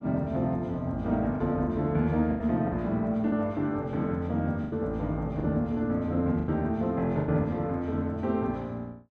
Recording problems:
lost packets; 6% of the sound replaced, filled with the last packet

